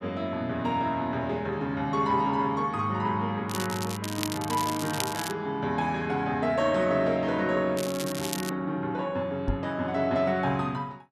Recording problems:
crackling; from 3.5 to 5.5 s and at 8 s; loose cable, SNR 8 dB
knock on the microphone; at 9.5 s; peak +1 dB vs average level

